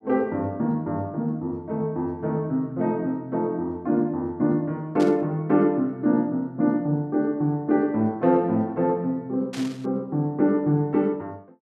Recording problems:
static burst; at 5 s and at 9.5 s; peak -9 dB vs average level

